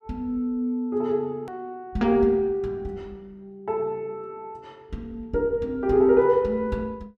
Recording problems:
click at an edit; at 1.5 s

